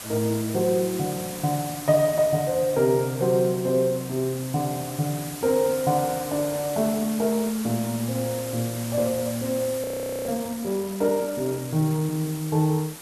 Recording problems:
hiss; slope -2 dB per octave, SNR 11 dB
audio freezing; at 10 s

